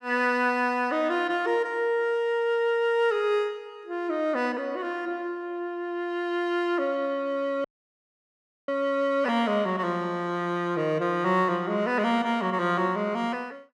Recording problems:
dropout; at 7.5 s for 1 s

